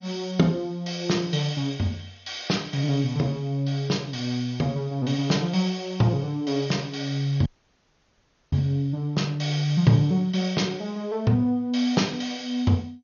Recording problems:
codec artefacts; MP2, log-spectral distance 3 dB, nothing above 6.7 kHz
dropout; at 7.5 s for 1 s

